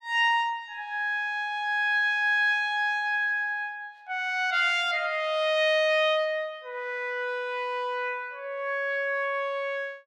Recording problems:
none

